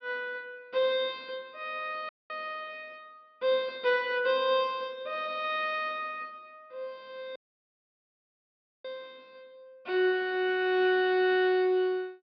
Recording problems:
low-pass filter; nothing above 5.5 kHz
dropout; at 2 s and at 7.5 s for 1.5 s

